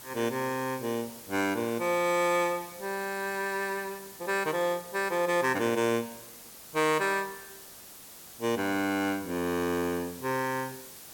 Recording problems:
background hiss; slope -2 dB per octave, SNR 15 dB

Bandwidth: 17 kHz